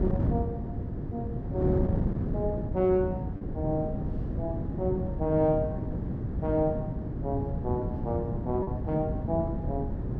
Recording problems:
wind noise; below 240 Hz, SNR 1 dB
lost packets; 0.8% of the sound replaced, filled with repeated pitch periods

